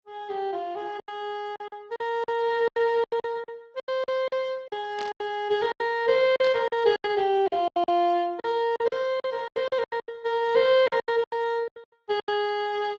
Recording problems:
lossy compression; Speex, then Opus, log-spectral distance 3 dB
lost packets; 16% of the sound replaced, filled with silence
static burst; at 5 s and at 6.5 s; peak -9 dB vs average level

